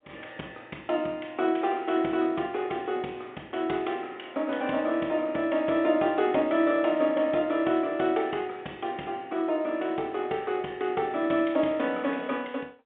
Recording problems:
telephone audio; 220 Hz to 3.6 kHz, G.711

